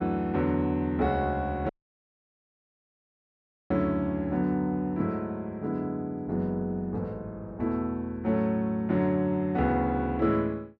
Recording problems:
dropout; at 1.5 s for 2 s

